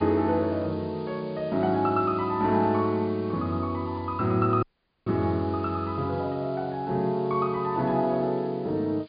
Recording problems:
treble missing; nothing above 4.9 kHz
background hiss; SNR 27 dB
dropout; at 4.5 s

